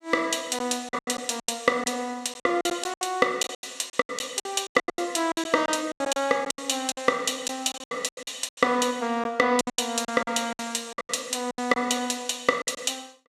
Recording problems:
lost packets; 17% of the sound replaced, filled with silence

